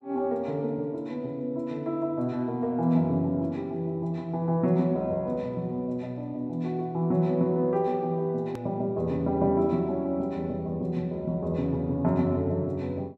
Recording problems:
click at an edit; at 8.5 s

